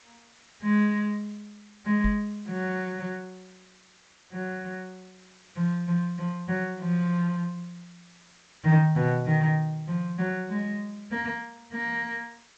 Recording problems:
codec artefacts; G.722, log-spectral distance 7 dB, nothing above 16 kHz
hiss; slope 0 dB per octave, SNR 27 dB
microphone thump; at 2 s; peak +1 dB vs average level

